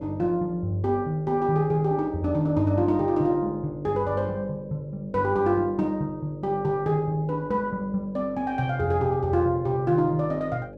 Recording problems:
hum; 50 Hz, harmonics up to 600 Hz, SNR 17 dB

